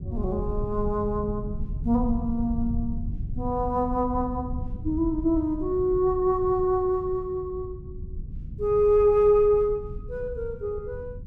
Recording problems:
low-frequency rumble; below 110 Hz, SNR 10 dB

